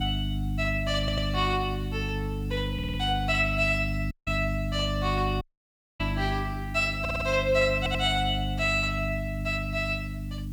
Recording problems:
hum; 50 Hz, harmonics up to 300 Hz, SNR 4 dB
background hiss; slope 0 dB per octave, SNR 27 dB
stutter; 4 times, first at 1 s
dropout; at 4 s and at 5.5 s for 0.5 s

